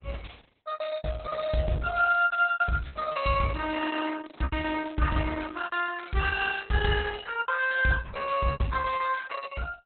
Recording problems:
lossy codec; Opus, log-spectral distance 6 dB, nothing above 4 kHz
lost packets; 12% of the sound replaced, filled with repeated pitch periods

